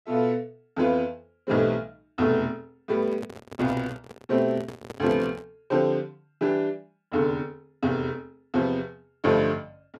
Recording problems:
handling noise; from 3 to 5.5 s; peak -7 dB vs average level

